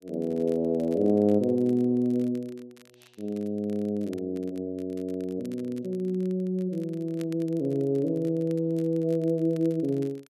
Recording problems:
crackling; vinyl, SNR 29 dB

